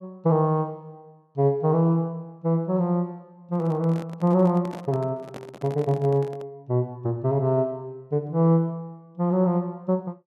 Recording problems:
handling noise; from 3.5 to 6.5 s; peak -10 dB vs average level

